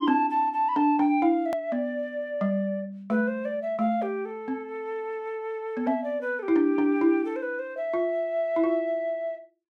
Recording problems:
hard cut with a click; at 1.5 s

